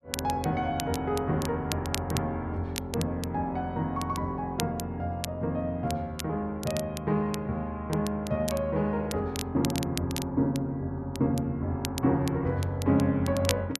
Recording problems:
crackle; vinyl, SNR 11 dB

